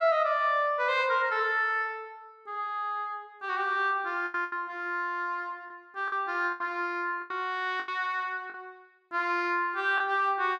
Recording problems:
lost packets; 5% of the sound replaced, filled with the last packet

